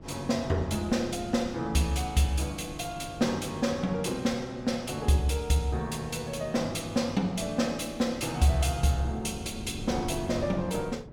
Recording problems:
wind noise; below 280 Hz, SNR 15 dB

